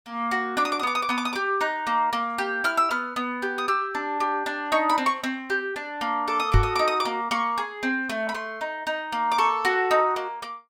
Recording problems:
microphone bump; at 6.5 s; peak +8 dB vs average level

